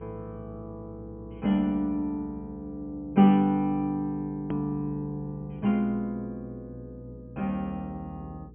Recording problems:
low-pass filter; nothing above 3.3 kHz
hum; 60 Hz, harmonics up to 480 Hz, SNR 20 dB
hard cut with a click; at 4.5 s

